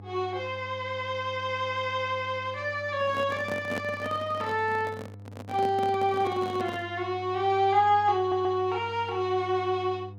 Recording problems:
electrical hum; 50 Hz, harmonics up to 700 Hz, SNR 17 dB
microphone handling noise; from 3 to 7 s; peak -2 dB vs average level
stutter; at 8 s

